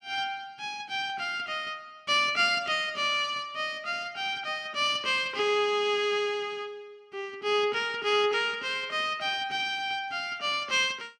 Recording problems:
none

